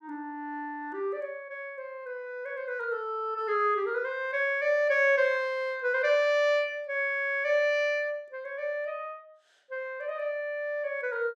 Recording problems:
none

